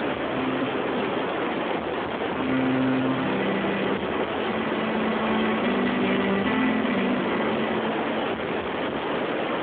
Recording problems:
telephone audio; 150 Hz to 3.3 kHz, Speex
distortion; hard clipping, signal-to-distortion ratio 9 dB
hiss; SNR 0 dB

